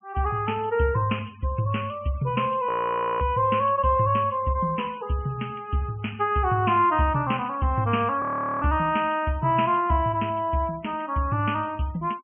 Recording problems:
treble cut off; nothing above 3.1 kHz
noise reduction artefacts; signal-to-artefact ratio 27 dB
frozen audio; at 2.5 s for 0.5 s and at 8 s

